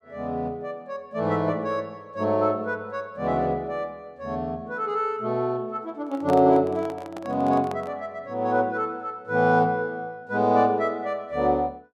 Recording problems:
handling noise; from 6 to 8 s; peak -5 dB vs average level

